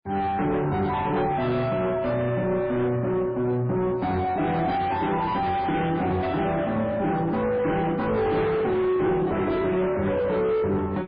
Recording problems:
codec artefacts; MP3, then MP3, log-spectral distance 2 dB
distortion; soft clipping, signal-to-distortion ratio 7 dB

